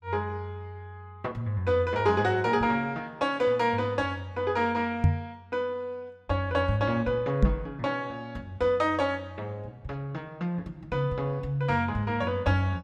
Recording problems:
microphone thump; at 5 s and at 7.5 s; peak +10 dB vs average level

